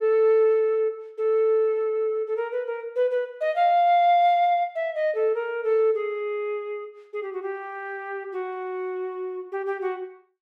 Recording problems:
none

